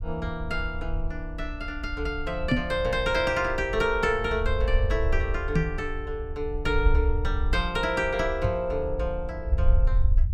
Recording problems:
low-frequency rumble; below 66 Hz, SNR 3 dB
microphone thump; at 2.5 s, at 5.5 s and at 8.5 s; peak +8 dB vs average level

